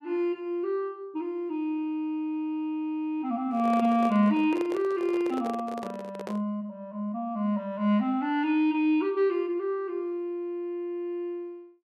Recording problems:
handling noise; from 3.5 to 6.5 s; peak -5 dB vs average level

